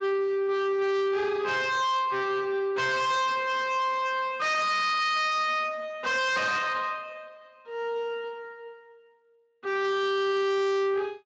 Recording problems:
codec artefacts; Speex, log-spectral distance 3 dB, nothing above 7.3 kHz
distorted audio; soft clipping, signal-to-distortion ratio 7 dB

